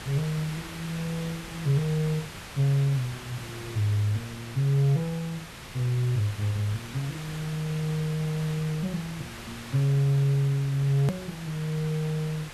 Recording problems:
background hiss; SNR 13 dB
edit click; at 11 s

